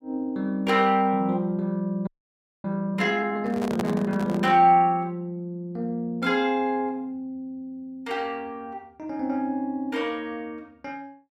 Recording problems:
frozen audio; at 2 s for 0.5 s
microphone handling noise; from 3.5 to 4.5 s; peak -1 dB vs average level

